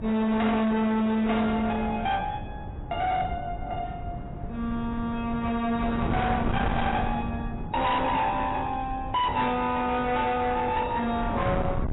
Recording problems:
lossy codec; AAC, log-spectral distance 2 dB, nothing above 3.8 kHz
distorted audio; hard clipping, signal-to-distortion ratio 7 dB
wind noise; below 490 Hz, SNR 8 dB

